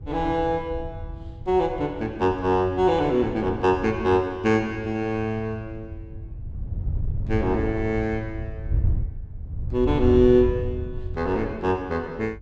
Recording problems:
wind on the microphone; below 100 Hz, SNR 9 dB

